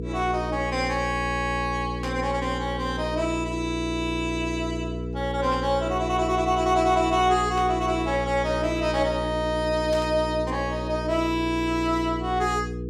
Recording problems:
hum; 60 Hz, harmonics up to 480 Hz, SNR 7 dB
static burst; 4 times, first at 2 s; peak -9 dB vs average level

